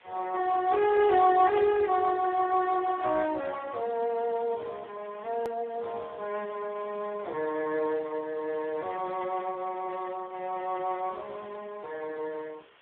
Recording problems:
telephone audio; 320 Hz to 2 kHz, Speex
background hiss; SNR 28 dB
edit click; at 5.5 s

